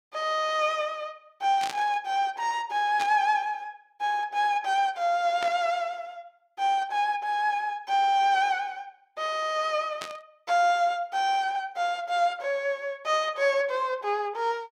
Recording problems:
burst of static; 4 times, first at 1.5 s; peak -4 dB vs average level

